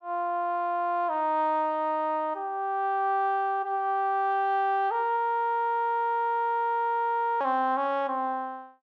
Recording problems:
frozen audio; at 5 s for 2 s

